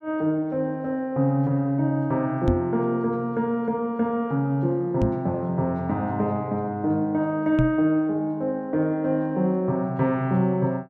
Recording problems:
microphone bump; at 2.5 s, at 5 s and at 7.5 s; peak +4 dB vs average level

